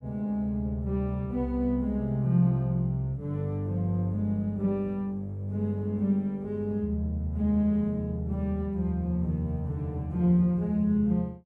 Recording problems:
none

